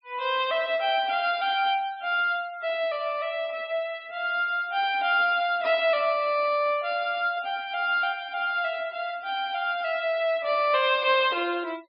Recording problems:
low-pass filter; nothing above 5.5 kHz
denoising artefacts; signal-to-artefact ratio 24 dB

